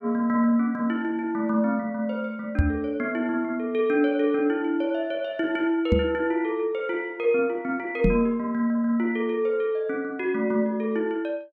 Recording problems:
microphone bump; at 2.5 s, at 6 s and at 8 s; peak +7 dB vs average level

